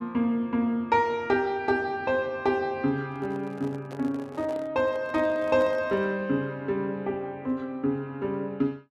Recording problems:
handling noise; from 3 to 6 s; peak -8 dB vs average level

